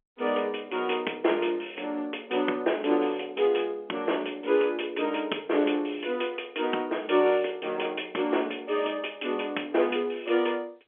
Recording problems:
telephone audio; 260 Hz to 3.4 kHz, G.711

